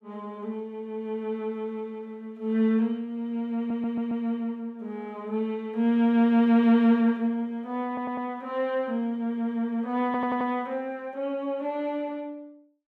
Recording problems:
stutter; at 3.5 s, at 8 s and at 10 s

